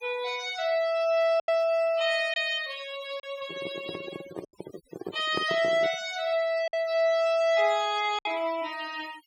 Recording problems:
denoising artefacts; signal-to-artefact ratio 20 dB
packet loss; 3% of the sound replaced, filled with silence
microphone handling noise; from 3.5 to 6 s; peak -2 dB vs average level

